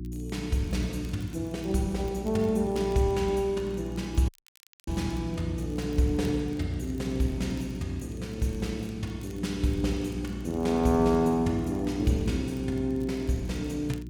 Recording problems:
hum; 60 Hz, harmonics up to 360 Hz, SNR 9 dB
crackle; vinyl, SNR 28 dB
audio cutting out; at 4.5 s for 0.5 s

